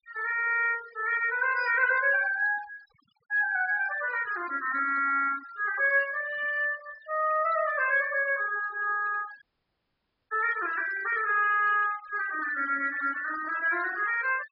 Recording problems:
low-pass filter; nothing above 5.5 kHz
denoising artefacts; signal-to-artefact ratio 17 dB
audio cutting out; at 9.5 s for 1 s

